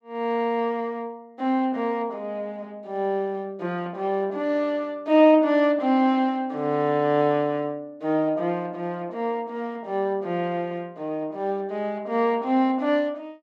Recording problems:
none

